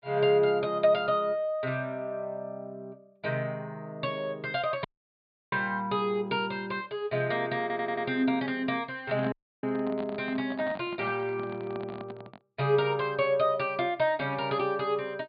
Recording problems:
low-pass filter; nothing above 4.6 kHz
dropout; at 5 s for 0.5 s and at 9.5 s
audio stuttering; at 7.5 s
microphone handling noise; from 9 to 12 s; peak -6 dB vs average level

